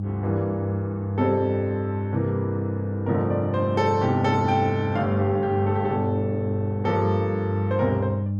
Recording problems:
mains hum; 50 Hz, harmonics up to 300 Hz, SNR 3 dB

